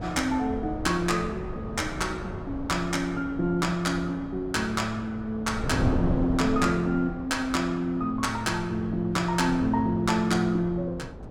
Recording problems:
wind noise; below 370 Hz, SNR 9 dB

